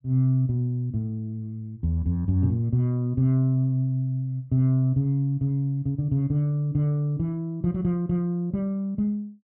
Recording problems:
none

